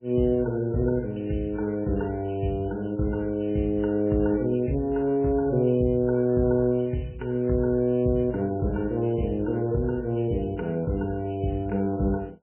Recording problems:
lossy codec; MP3, log-spectral distance 3 dB, nothing above 2.7 kHz

